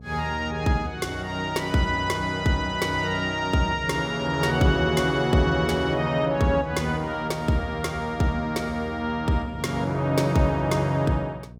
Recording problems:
mains hum; 60 Hz, harmonics up to 720 Hz, SNR 20 dB

